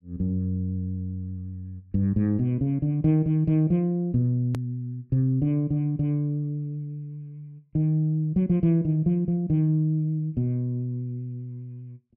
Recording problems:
edit click; at 4.5 s

